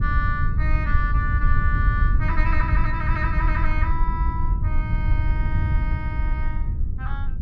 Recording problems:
low-frequency rumble; below 80 Hz, SNR -6 dB

